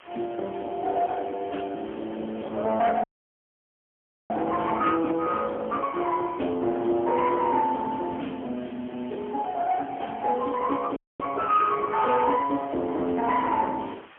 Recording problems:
phone line; 260 Hz to 3.3 kHz, AMR-NB, then MP3
distortion; soft clipping, signal-to-distortion ratio 12 dB
hiss; SNR 24 dB
dropout; at 3 s for 1.5 s and at 11 s

